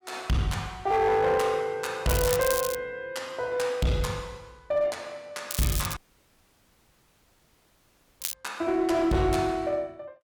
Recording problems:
distorted audio; hard clipping, uneven, signal-to-distortion ratio 11 dB
crackle; at 2 s and from 5.5 to 8.5 s; loose cable, SNR 6 dB
audio cutting out; at 6 s for 2 s

